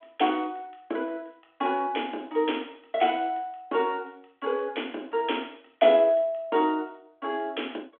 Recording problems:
phone line; 240 Hz to 3.4 kHz, G.726

